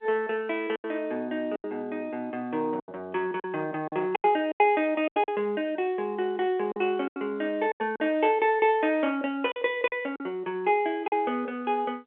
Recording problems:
phone line; 320 Hz to 3.4 kHz, G.711
packet loss; 8% of the sound replaced, filled with silence

